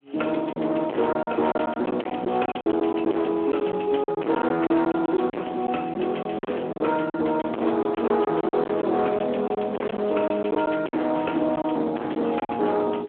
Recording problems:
telephone audio; 260 Hz to 3.3 kHz, Speex
distortion; hard clipping, signal-to-distortion ratio 4 dB
lost packets; 10% of the sound replaced, filled with silence

